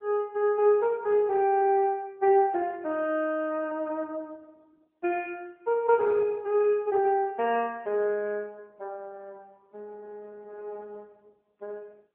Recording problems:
phone line; 260 Hz to 3.7 kHz, AMR-NB

